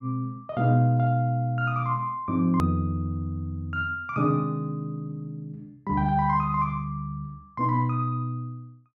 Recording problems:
hard cut with a click; at 2.5 s

